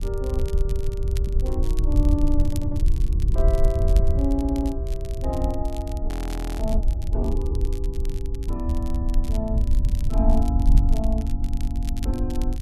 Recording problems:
wind on the microphone; below 66 Hz, SNR -6 dB
crackle; vinyl, SNR 16 dB
audio stuttering; at 2.5 s, at 4.5 s and at 11 s
frozen audio; at 6 s for 0.5 s

